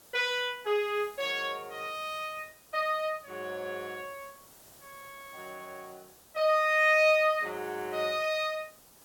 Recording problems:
background hiss; SNR 24 dB

